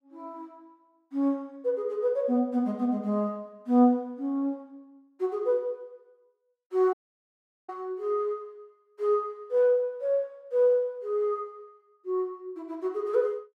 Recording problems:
audio cutting out; at 7 s for 1 s

